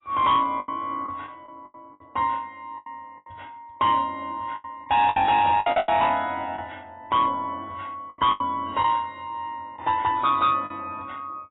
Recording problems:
lossy compression; AAC, log-spectral distance 2 dB, nothing above 3.6 kHz
distorted audio; hard clipping, uneven, signal-to-distortion ratio 12 dB
lost packets; 8% of the sound replaced, filled with the last packet

